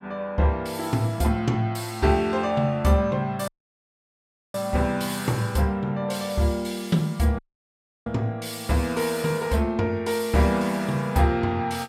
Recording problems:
audio cutting out; at 3.5 s for 1 s and at 7.5 s for 0.5 s

